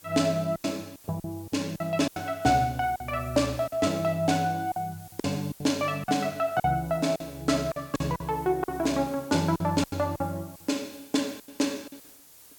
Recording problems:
background hiss; slope -1 dB per octave, SNR 21 dB
packet loss; 10% of the sound replaced, filled with silence

